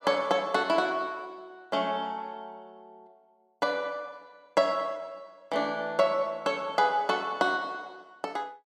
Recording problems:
none

